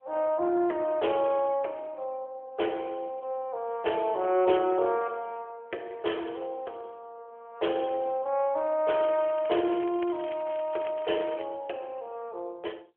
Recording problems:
telephone audio; 300 Hz to 3.3 kHz, AMR-NB
crackle; from 9 to 11 s; loose cable, SNR 18 dB

